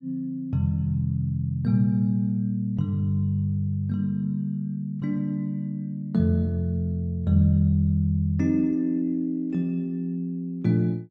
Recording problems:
none

